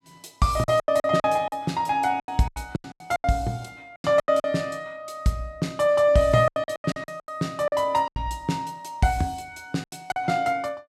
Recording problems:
lost packets; 14% of the sound replaced, filled with silence

